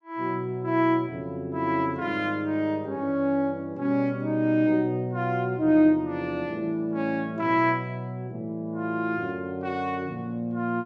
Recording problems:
none

